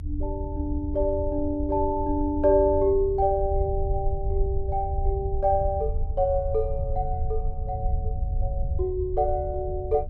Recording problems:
rumble; below 78 Hz, SNR 5 dB

